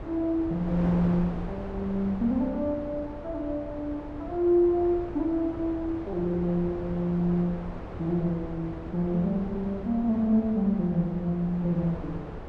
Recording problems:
wind on the microphone; below 560 Hz, SNR 11 dB

